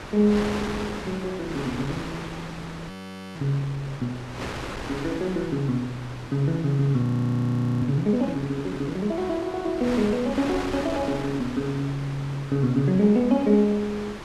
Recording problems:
wind on the microphone; below 1.9 kHz, SNR 11 dB
frozen audio; at 3 s and at 7 s for 1 s

